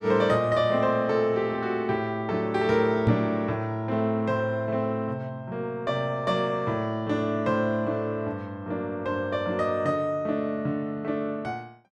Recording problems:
microphone thump; at 3 s; peak +6 dB vs average level

